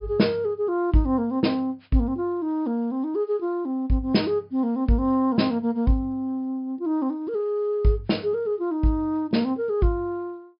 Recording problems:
low-pass filter; nothing above 5.5 kHz

